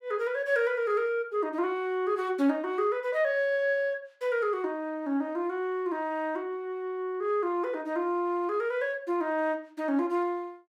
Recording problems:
none

